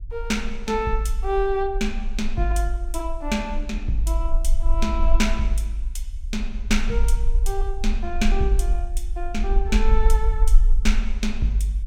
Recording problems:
rumble; below 40 Hz, strongest tone 24 Hz, SNR 1 dB

